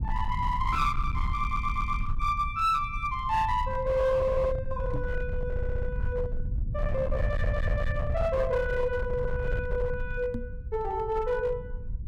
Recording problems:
distortion; hard clipping, uneven, signal-to-distortion ratio 12 dB
low-frequency rumble; below 94 Hz, SNR 4 dB
stutter; at 1.5 s, at 5.5 s and at 7 s
microphone bump; at 5 s and at 10 s; peak -1 dB vs average level

